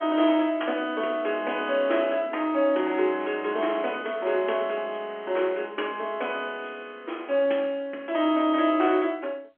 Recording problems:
telephone audio; 240 Hz to 3.3 kHz, G.711

